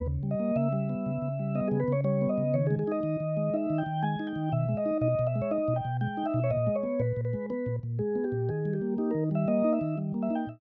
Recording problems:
none

